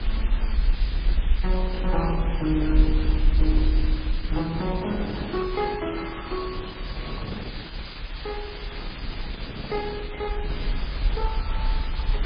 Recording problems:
lossy compression; Opus, then MP3, log-spectral distance 2 dB, nothing above 4.2 kHz
hiss; SNR 9 dB
low-frequency rumble; below 48 Hz, strongest tone 30 Hz, SNR -1 dB
wind on the microphone; below 370 Hz, SNR 9 dB
crackle; from 2.5 to 4 s and from 6.5 to 9.5 s; loose cable, SNR 23 dB

